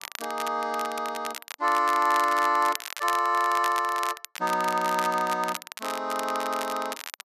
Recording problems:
crackling; vinyl, SNR 11 dB

